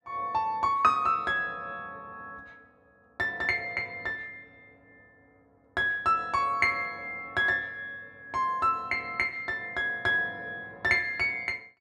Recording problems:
none

